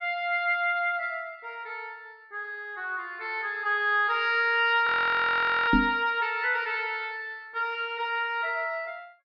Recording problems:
treble cut off; nothing above 5.5 kHz
frozen audio; at 5 s for 1 s
microphone thump; at 5.5 s; peak +6 dB vs average level

